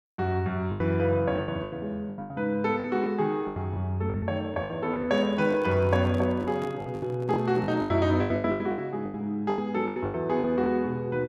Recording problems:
lost packets; 15% of the sound replaced, filled with the last packet
handling noise; from 5 to 8 s; peak -8 dB vs average level

